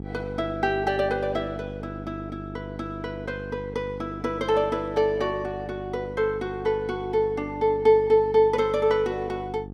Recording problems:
hum; 50 Hz, harmonics up to 850 Hz, SNR 13 dB

